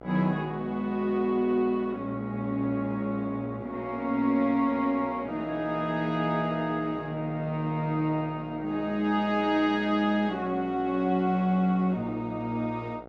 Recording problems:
hum; 60 Hz, harmonics up to 2 kHz, SNR 16 dB

